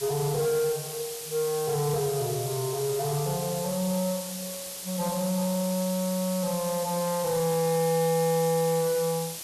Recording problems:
distortion; soft clipping, signal-to-distortion ratio 11 dB
background hiss; SNR 7 dB

